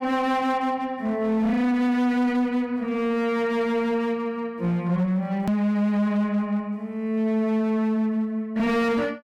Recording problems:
distortion; hard clipping, uneven, signal-to-distortion ratio 10 dB
edit click; at 5.5 s

